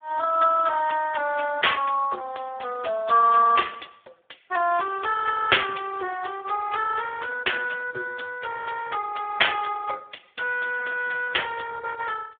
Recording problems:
phone line; 320 Hz to 3.6 kHz, Speex

